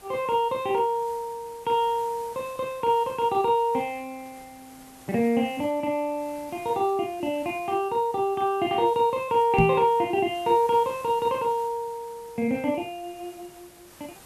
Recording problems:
background hiss; slope -3 dB per octave, SNR 24 dB
microphone thump; at 9.5 s; peak +5 dB vs average level

